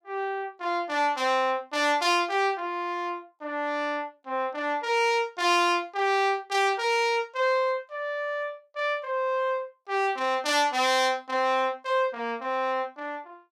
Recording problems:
none

